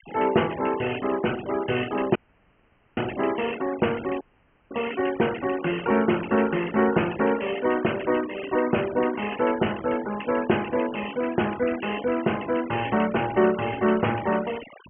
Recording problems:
low-pass filter; nothing above 3.1 kHz
denoising artefacts; signal-to-artefact ratio 15 dB
audio cutting out; at 2 s for 1 s and at 4 s for 0.5 s

